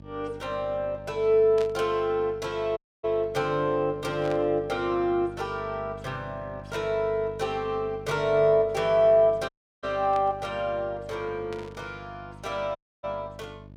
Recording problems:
mains hum; 50 Hz, harmonics up to 900 Hz, SNR 19 dB
burst of static; 5 times, first at 1.5 s; peak -10 dB vs average level
audio cutting out; at 3 s, at 9.5 s and at 13 s

